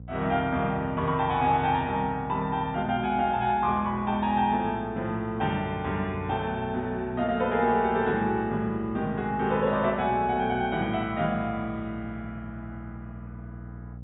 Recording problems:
treble missing; nothing above 4 kHz
hum; 60 Hz, harmonics up to 540 Hz, SNR 16 dB

